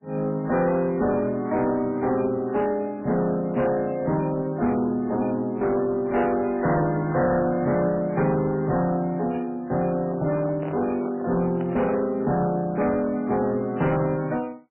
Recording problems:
lossy compression; MP3, log-spectral distance 2 dB, nothing above 2.4 kHz
distorted audio; soft clipping, signal-to-distortion ratio 10 dB
handling noise; from 10 to 12 s; peak -7 dB vs average level

